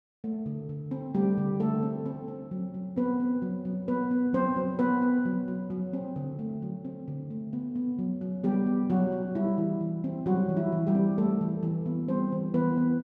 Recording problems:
none

